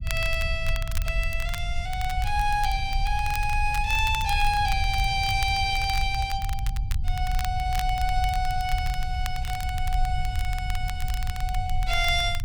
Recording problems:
low-frequency rumble; below 68 Hz, SNR 4 dB
crackling; vinyl, SNR 13 dB

